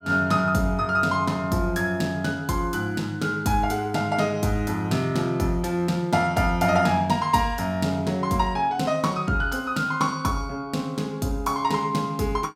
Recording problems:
none

